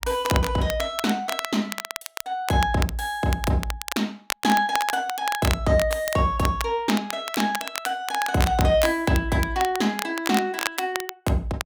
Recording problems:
crackle; vinyl, SNR 8 dB

